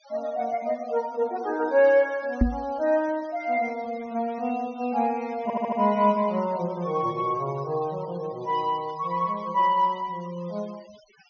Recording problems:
low-pass filter; nothing above 6.4 kHz
noise reduction artefacts; signal-to-artefact ratio 24 dB
microphone thump; at 2.5 s; peak +8 dB vs average level
audio stuttering; at 5.5 s

